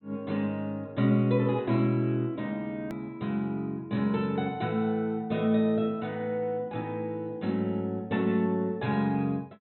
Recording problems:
low-pass filter; nothing above 4.1 kHz
click at an edit; at 3 s

